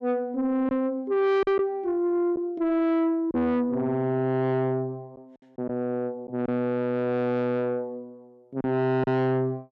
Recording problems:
distortion; soft clipping, signal-to-distortion ratio 7 dB
lost packets; 3% of the sound replaced, filled with silence

